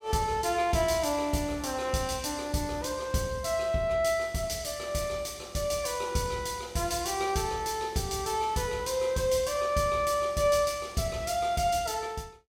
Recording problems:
none

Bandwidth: 16.5 kHz